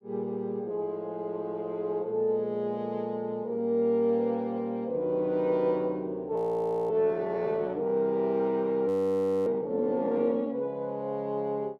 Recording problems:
frozen audio; at 6.5 s for 0.5 s and at 9 s for 0.5 s

